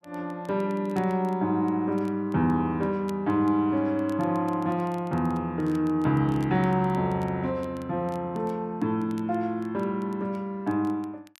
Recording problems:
crackling; vinyl, SNR 30 dB

